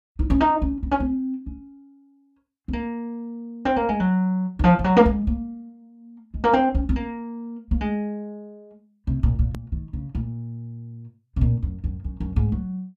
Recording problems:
edit click; at 9.5 s

